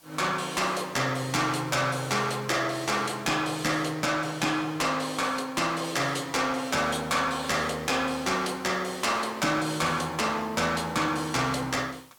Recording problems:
distorted audio; soft clipping, signal-to-distortion ratio 11 dB
background hiss; SNR 28 dB

